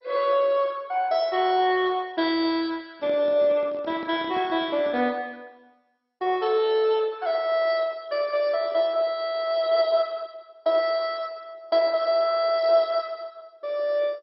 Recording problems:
lossy codec; MP2, log-spectral distance 3 dB, nothing above 4.6 kHz
handling noise; from 3 to 5 s; peak -11 dB vs average level

